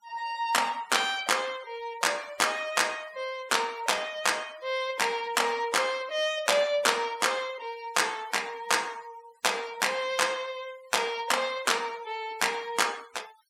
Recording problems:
noise reduction artefacts; signal-to-artefact ratio 21 dB

